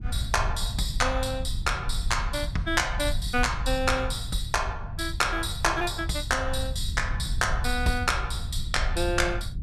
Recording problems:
rumble; below 84 Hz, SNR 5 dB

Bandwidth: 14.5 kHz